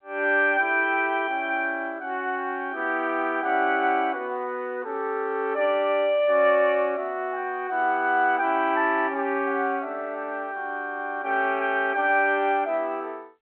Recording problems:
phone line; 240 Hz to 3.1 kHz, G.711

